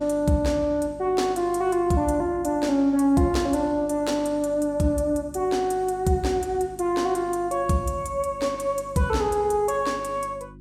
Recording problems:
electrical hum; 50 Hz, harmonics up to 350 Hz, SNR 22 dB

